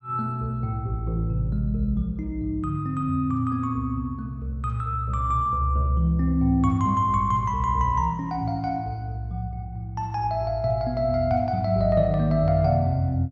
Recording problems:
none

